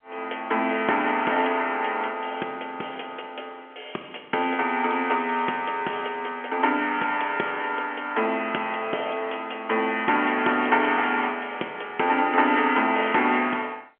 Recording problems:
telephone audio; 260 Hz to 3.3 kHz, G.711

